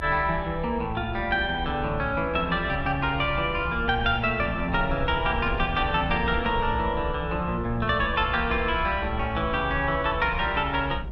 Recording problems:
rumble; below 72 Hz, SNR 10 dB

